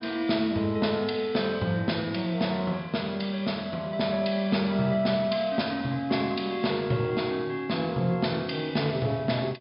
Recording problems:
low-pass filter; nothing above 5.5 kHz

